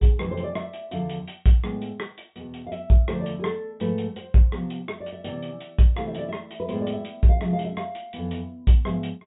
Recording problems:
low-pass filter; nothing above 4 kHz

